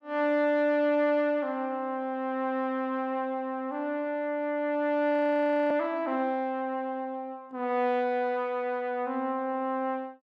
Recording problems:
audio freezing; at 5 s for 0.5 s

